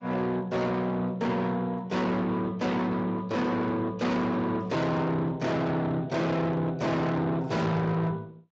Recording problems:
codec artefacts; Opus, then Speex, log-spectral distance 3 dB
distorted audio; soft clipping, signal-to-distortion ratio 6 dB

